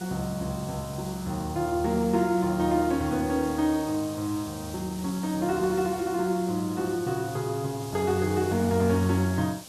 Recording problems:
background hiss; SNR 15 dB

